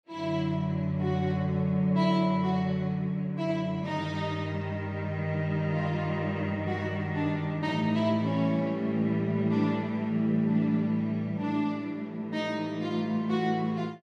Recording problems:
none

